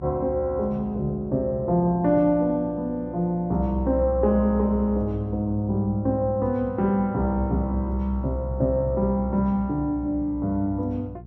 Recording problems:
mains hum; 60 Hz, harmonics up to 480 Hz, SNR 18 dB

